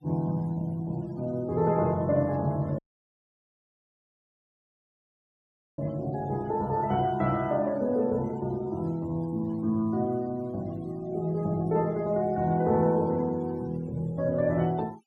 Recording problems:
noise reduction artefacts; signal-to-artefact ratio 26 dB
dropout; at 3 s for 3 s

